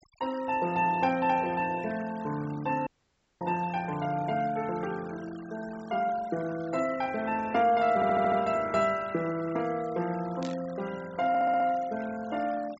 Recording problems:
treble missing; nothing above 7.8 kHz
denoising artefacts; signal-to-artefact ratio 19 dB
dropout; at 3 s for 0.5 s
audio stuttering; at 8 s and at 11 s
burst of static; at 10 s; peak -11 dB vs average level

